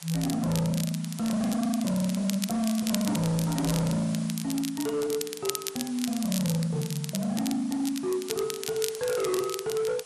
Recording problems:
lossy compression; MP3, log-spectral distance 5 dB, nothing above 11 kHz
distortion; hard clipping, signal-to-distortion ratio 7 dB
hiss; SNR 16 dB
crackling; vinyl, SNR 8 dB

